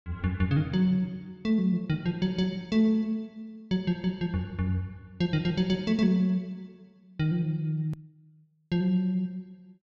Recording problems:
hard cut with a click; at 8 s

